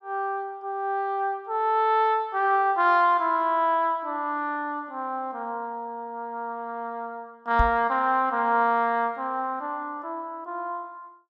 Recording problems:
microphone bump; at 7.5 s; peak +3 dB vs average level

